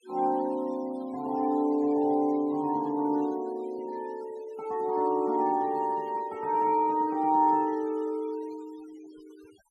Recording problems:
denoising artefacts; signal-to-artefact ratio 26 dB

